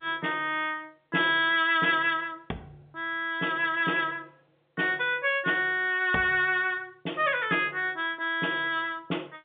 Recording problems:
telephone audio; 220 Hz to 3.6 kHz, G.711

